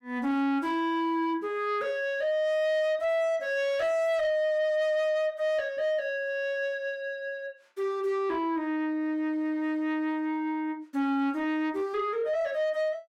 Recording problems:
distorted audio; soft clipping, signal-to-distortion ratio 10 dB

